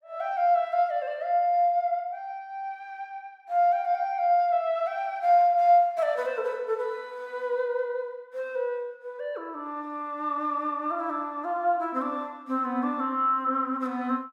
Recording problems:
none

